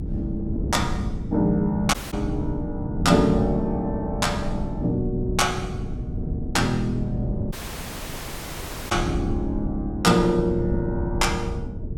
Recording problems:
electrical hum; 50 Hz, harmonics up to 450 Hz, SNR 17 dB
wind on the microphone; below 180 Hz, SNR 6 dB
dropout; at 2 s and at 7.5 s for 1.5 s

